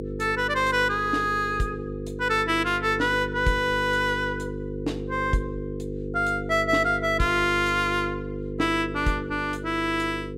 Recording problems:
hum; 50 Hz, harmonics up to 500 Hz, SNR 8 dB

